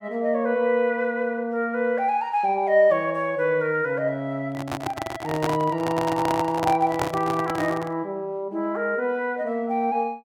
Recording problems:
handling noise; from 4.5 to 8 s; peak +2 dB vs average level

